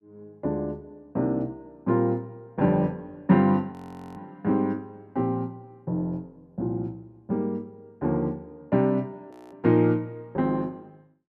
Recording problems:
frozen audio; at 3.5 s and at 9.5 s

